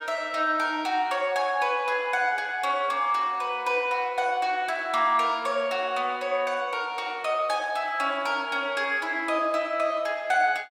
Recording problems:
none

